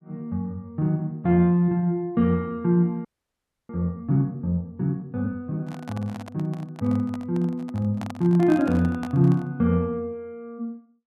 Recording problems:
audio freezing; at 3 s for 0.5 s
microphone handling noise; from 5.5 to 9.5 s; peak -7 dB vs average level

